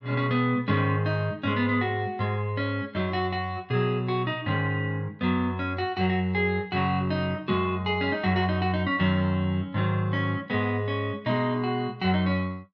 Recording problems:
none

